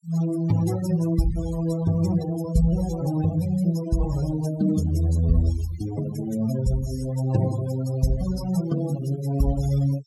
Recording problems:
noise reduction artefacts; signal-to-artefact ratio 14 dB

